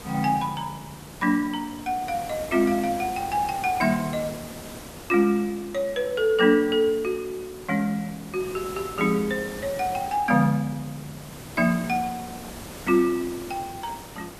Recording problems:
background hiss; slope -5 dB per octave, SNR 15 dB

